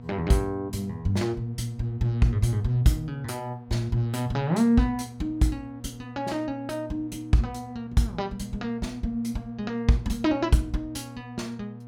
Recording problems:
electrical hum; 60 Hz, harmonics up to 960 Hz, SNR 15 dB

